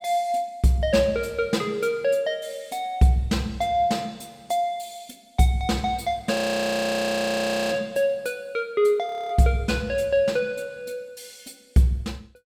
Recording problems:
frozen audio; at 6.5 s for 1.5 s and at 9 s

